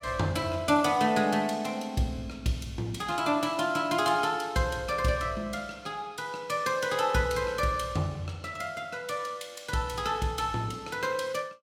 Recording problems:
none

